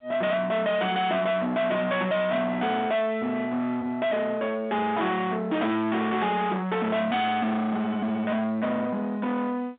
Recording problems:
phone line; 190 Hz to 3.7 kHz, G.711
distortion; soft clipping, signal-to-distortion ratio 7 dB

